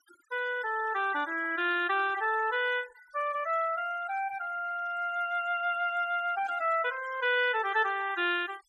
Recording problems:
noise reduction artefacts; signal-to-artefact ratio 20 dB
static burst; at 6.5 s; peak -24 dB vs average level

